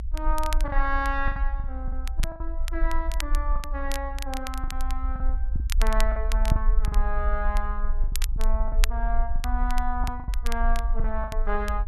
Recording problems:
low-frequency rumble; below 46 Hz, strongest tone 22 Hz, SNR -3 dB
crackling; vinyl, SNR 8 dB
packet loss; 10% of the sound replaced, filled with the last packet

